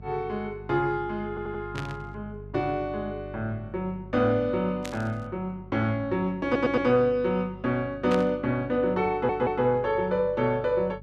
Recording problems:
electrical hum; 50 Hz, harmonics up to 600 Hz, SNR 17 dB
stutter; at 1.5 s, at 6.5 s and at 9 s
static burst; at 1.5 s, at 5 s and at 8 s; peak -5 dB vs average level

